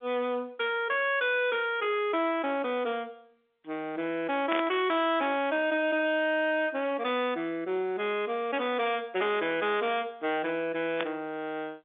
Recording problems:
telephone audio; 220 Hz to 3.6 kHz, G.711
distortion; hard clipping, uneven, signal-to-distortion ratio 6 dB
burst of static; at 4.5 s and at 11 s; peak 0 dB vs average level

